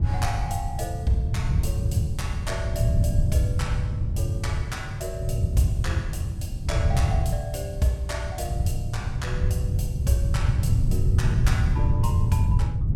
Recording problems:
wind on the microphone; below 120 Hz, SNR -6 dB

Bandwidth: 17 kHz